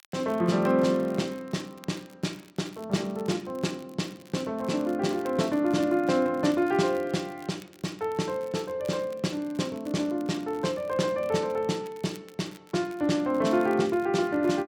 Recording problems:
crackling; vinyl, SNR 26 dB

